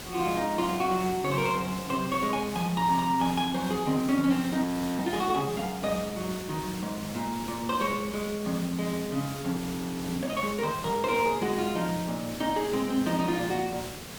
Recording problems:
hiss; slope -3 dB per octave, SNR 11 dB
frozen audio; at 4.5 s and at 9.5 s for 0.5 s

